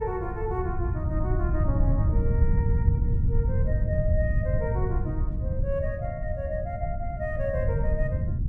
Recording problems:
wind noise; below 110 Hz, SNR -6 dB

